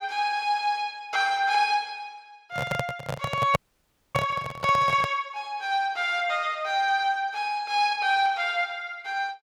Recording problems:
microphone handling noise; from 2.5 to 5 s; peak +4 dB vs average level
audio freezing; at 3.5 s for 0.5 s

